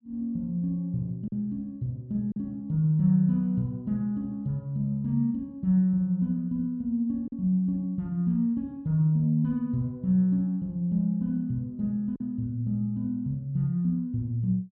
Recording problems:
packet loss; 1.1% of the sound replaced, filled with silence

